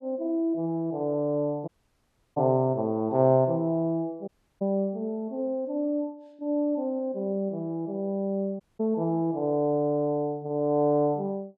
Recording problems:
audio cutting out; at 1.5 s for 0.5 s, at 4.5 s and at 8.5 s

